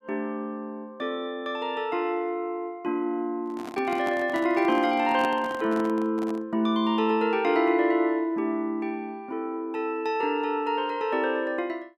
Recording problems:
handling noise; from 3.5 to 6.5 s; peak -3 dB vs average level

